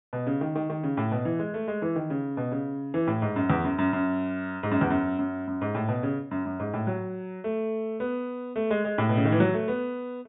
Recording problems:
treble cut off; nothing above 4 kHz

